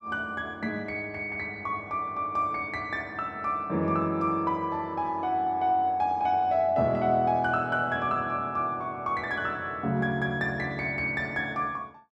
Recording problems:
none

